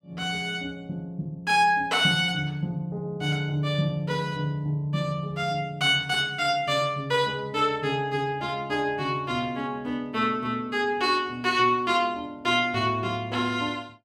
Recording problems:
none

